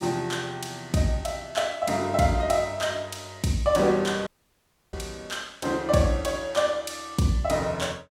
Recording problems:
dropout; at 4.5 s for 0.5 s

